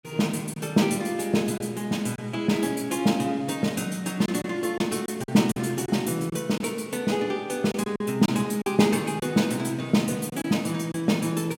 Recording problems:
packet loss; 4% of the sound replaced, filled with silence

